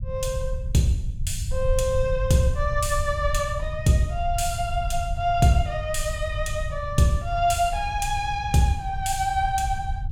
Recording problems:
low-frequency rumble; below 84 Hz, SNR 7 dB

